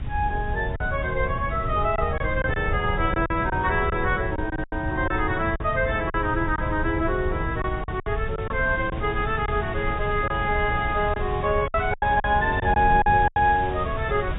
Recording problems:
treble missing; nothing above 3.7 kHz
lossy codec; AAC, log-spectral distance 2 dB
hiss; SNR 17 dB
wind noise; below 110 Hz, SNR 7 dB
lost packets; 7% of the sound replaced, filled with silence

